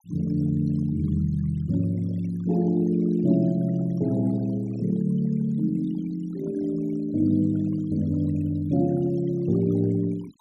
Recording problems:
noise reduction artefacts; signal-to-artefact ratio 23 dB

